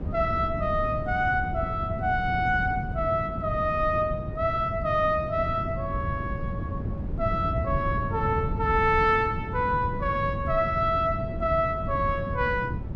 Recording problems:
wind noise; below 180 Hz, SNR 6 dB

